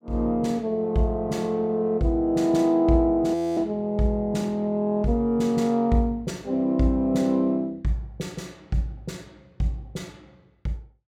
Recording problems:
frozen audio; at 3.5 s

